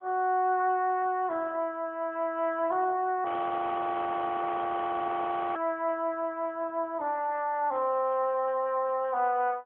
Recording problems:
phone line; 280 Hz to 3.4 kHz, AMR-NB
frozen audio; at 3.5 s for 2.5 s

